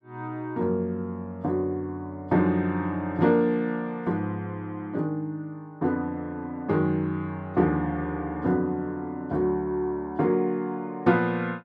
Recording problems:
none

